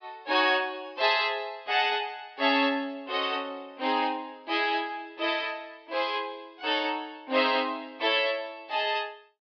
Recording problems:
low-pass filter; nothing above 5.5 kHz

